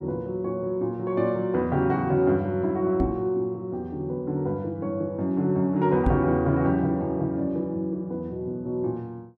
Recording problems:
microphone bump; at 3 s and at 6 s; peak +4 dB vs average level

